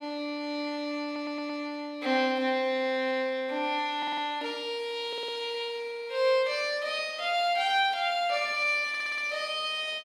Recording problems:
audio stuttering; 4 times, first at 1 s

